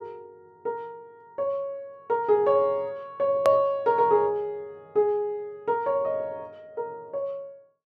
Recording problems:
edit click; at 3.5 s

